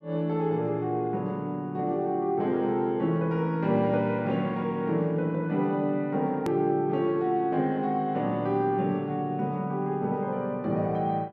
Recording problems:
hard cut with a click; at 6.5 s

